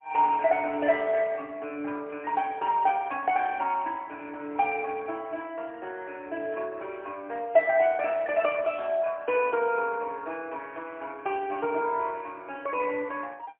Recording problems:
telephone audio; 240 Hz to 3.1 kHz, AMR-NB, then MP3

